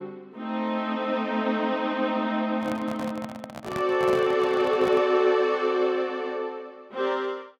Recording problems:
handling noise; from 2.5 to 5 s; peak -5 dB vs average level

